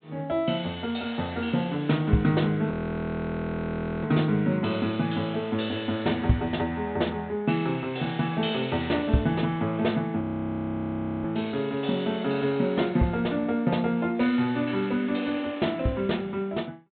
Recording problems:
treble cut off; nothing above 4 kHz
audio freezing; at 2.5 s for 1.5 s and at 10 s for 1 s

